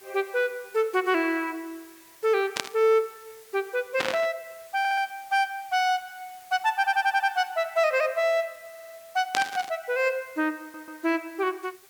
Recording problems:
background hiss; slope 0 dB per octave, SNR 24 dB
static burst; at 2.5 s, at 4 s and at 9.5 s; peak +3 dB vs average level
audio stuttering; 4 times, first at 5 s

